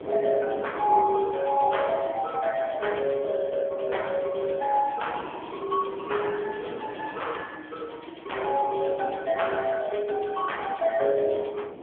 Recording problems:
telephone audio; 300 Hz to 3.4 kHz, AMR-NB
wind noise; below 670 Hz, SNR 15 dB

